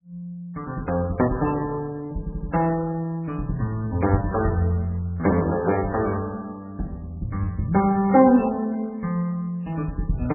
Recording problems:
codec artefacts; MP3, log-spectral distance 2 dB, nothing above 2.7 kHz
stutter; at 2 s

